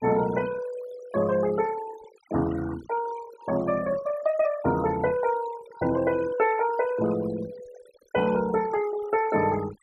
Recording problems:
denoising artefacts; signal-to-artefact ratio 14 dB

